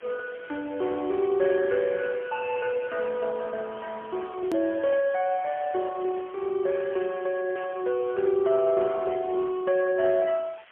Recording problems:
phone line; 240 Hz to 2.1 kHz, AMR-NB, then MP3
background hiss; SNR 24 dB
hard cut with a click; at 4.5 s

